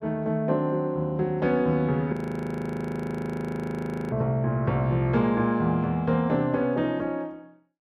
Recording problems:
frozen audio; at 2 s for 2 s

